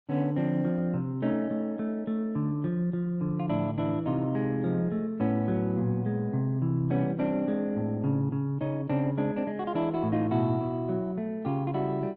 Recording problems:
codec artefacts; Opus, log-spectral distance 2 dB

